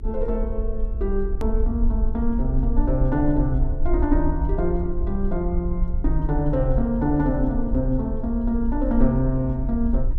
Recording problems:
electrical hum; 50 Hz, harmonics up to 400 Hz, SNR 20 dB
rumble; below 54 Hz, SNR 3 dB
edit click; at 1.5 s

